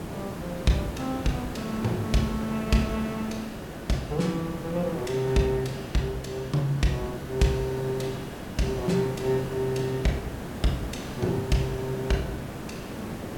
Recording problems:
hiss; slope -7 dB per octave, SNR 8 dB

